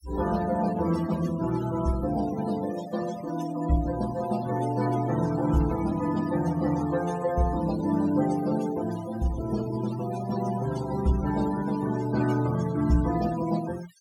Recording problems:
denoising artefacts; signal-to-artefact ratio 14 dB

